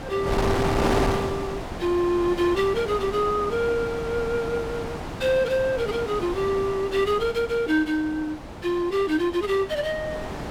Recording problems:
wind on the microphone; below 950 Hz, SNR 6 dB

